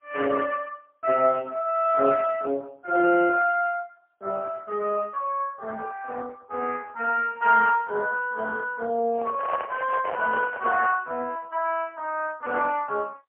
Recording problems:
telephone audio; 300 Hz to 2.9 kHz, AMR-NB, then MP3
handling noise; from 9 to 11 s; peak -4 dB vs average level

